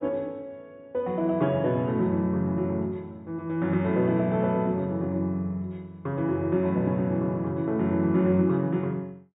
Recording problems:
treble missing; nothing above 4 kHz

